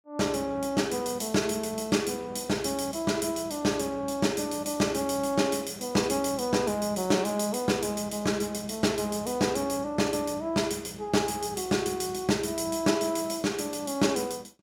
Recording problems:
none

